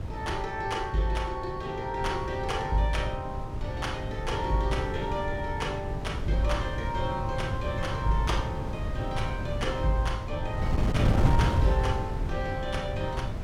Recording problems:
wind noise; below 160 Hz, SNR 1 dB

